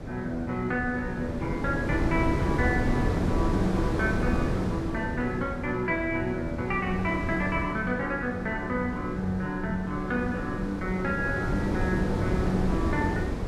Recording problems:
wind noise; below 380 Hz, SNR 2 dB

